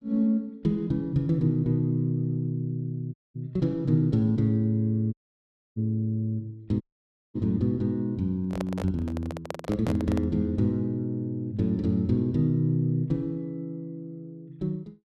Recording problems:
audio cutting out; at 3 s, at 5 s for 0.5 s and at 7 s for 0.5 s
handling noise; from 8.5 to 10 s; peak -3 dB vs average level

